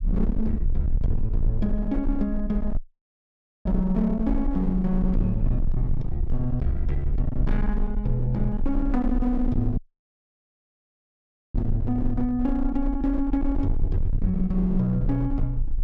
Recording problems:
distortion; hard clipping, uneven, signal-to-distortion ratio 7 dB
low-frequency rumble; below 46 Hz, strongest tone 24 Hz, SNR 4 dB
dropout; at 3 s for 1 s and at 10 s for 2 s

